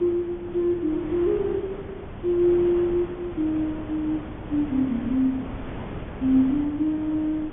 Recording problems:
treble missing; nothing above 3.5 kHz
lossy codec; AAC, log-spectral distance 2 dB
hum; 50 Hz, harmonics up to 800 Hz, SNR 24 dB
wind noise; below 600 Hz, SNR 13 dB

